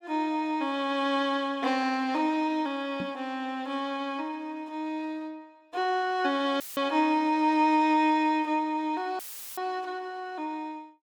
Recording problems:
knock on the microphone; at 3 s; peak -4 dB vs average level
audio cutting out; at 6.5 s and at 9 s; filled with static

